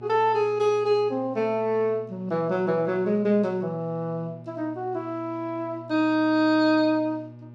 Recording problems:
electrical hum; 60 Hz, harmonics up to 840 Hz, SNR 20 dB

